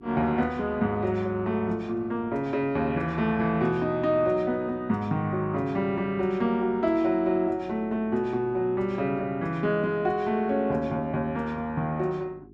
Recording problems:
hum; 50 Hz, harmonics up to 400 Hz, SNR 23 dB

